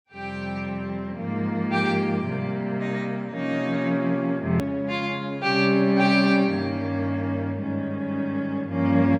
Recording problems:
click at an edit; at 4.5 s

